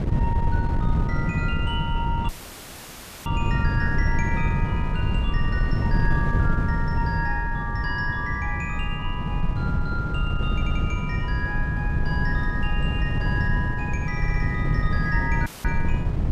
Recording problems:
wind noise; below 150 Hz, SNR -5 dB
dropout; at 2.5 s for 1 s and at 15 s; filled with static
stutter; at 11 s and at 14 s

